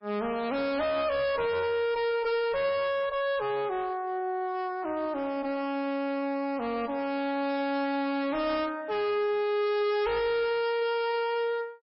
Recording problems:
codec artefacts; MP3, log-spectral distance 2 dB, nothing above 4.8 kHz
distorted audio; hard clipping, signal-to-distortion ratio 6 dB

